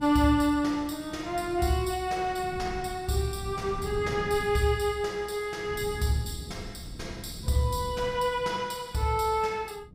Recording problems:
wind on the microphone; below 190 Hz, SNR 14 dB

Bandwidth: 15.5 kHz